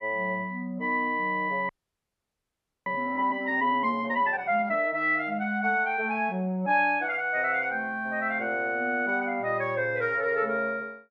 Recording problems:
frozen audio; at 1.5 s for 1 s

